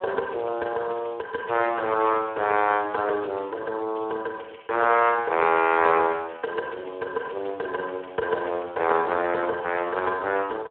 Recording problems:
telephone audio; 300 Hz to 2.9 kHz, Speex

